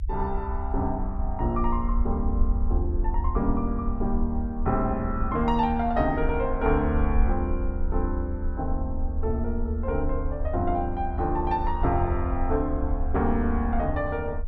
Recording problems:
rumble; below 72 Hz, strongest tone 22 Hz, SNR 3 dB

